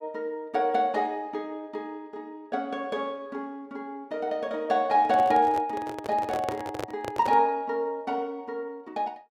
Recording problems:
microphone handling noise; from 5 to 7.5 s; peak 0 dB vs average level

